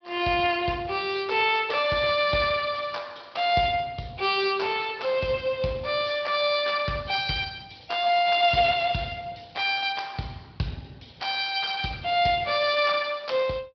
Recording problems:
low-pass filter; nothing above 4.8 kHz
lossy compression; Speex, log-spectral distance 7 dB

